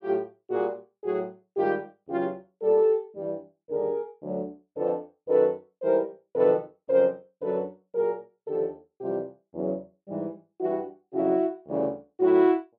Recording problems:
none

